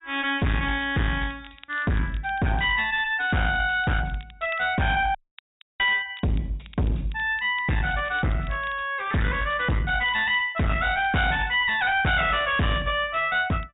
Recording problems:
treble cut off; nothing above 4 kHz
distorted audio; hard clipping, uneven, signal-to-distortion ratio 5 dB
crackle; vinyl, SNR 27 dB
audio cutting out; at 5 s for 0.5 s

